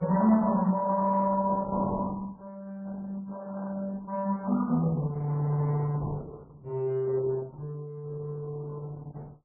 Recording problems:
lossy compression; Opus, then MP3, log-spectral distance 3 dB

